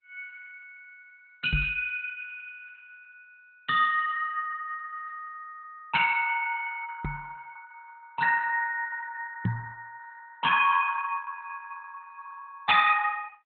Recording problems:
lossy codec; Opus, log-spectral distance 4 dB, nothing above 3.6 kHz
microphone thump; at 1.5 s, at 7 s and at 9.5 s; peak +4 dB vs average level

